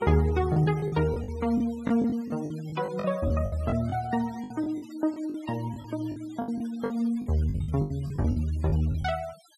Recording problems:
noise reduction artefacts; signal-to-artefact ratio 21 dB
lost packets; 13% of the sound replaced, filled with the last packet

